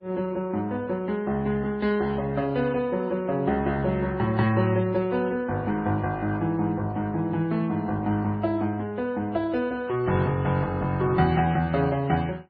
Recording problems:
codec artefacts; MP3, then Vorbis, log-spectral distance 2 dB, nothing above 4.6 kHz

